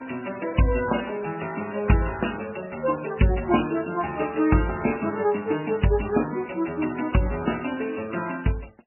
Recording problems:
lossy codec; MP3, then MP3, log-spectral distance 9 dB, nothing above 2.9 kHz

